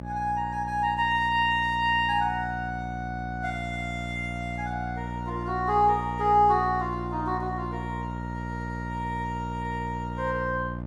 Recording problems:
electrical hum; 60 Hz, harmonics up to 1.2 kHz, SNR 8 dB

